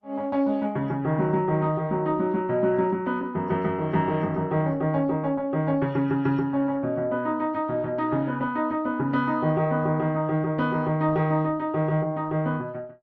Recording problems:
lossy compression; Opus, log-spectral distance 2 dB

